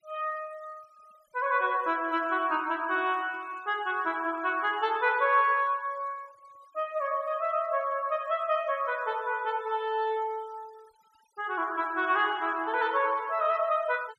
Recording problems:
noise reduction artefacts; signal-to-artefact ratio 26 dB

